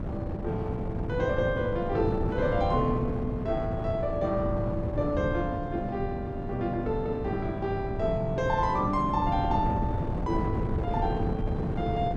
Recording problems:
wind on the microphone; below 260 Hz, SNR 3 dB

